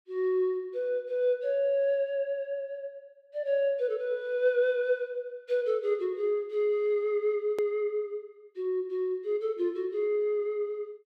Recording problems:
edit click; at 7.5 s

